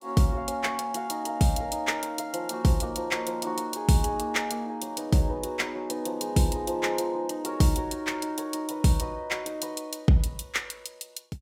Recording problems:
none

